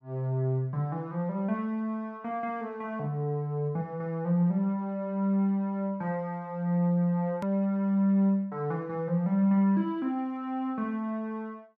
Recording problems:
edit click; at 7.5 s

